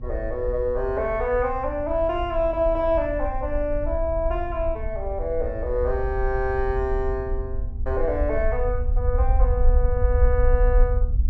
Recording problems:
hum; 60 Hz, harmonics up to 720 Hz, SNR 19 dB
low-frequency rumble; below 60 Hz, SNR 2 dB

